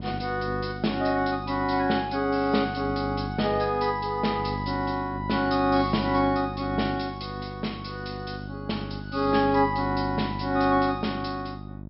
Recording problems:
treble missing; nothing above 5.4 kHz
electrical hum; 50 Hz, harmonics up to 700 Hz, SNR 9 dB

